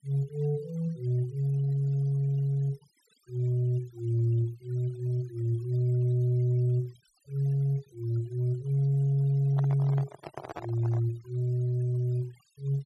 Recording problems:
noise reduction artefacts; signal-to-artefact ratio 28 dB
handling noise; from 9.5 to 11 s; peak -6 dB vs average level

